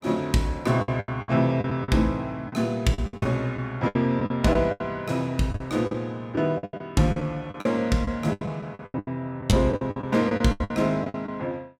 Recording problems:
lost packets; 16% of the sound replaced, filled with the last packet

